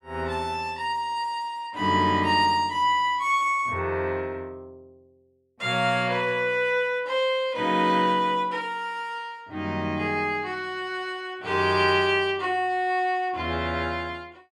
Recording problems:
none

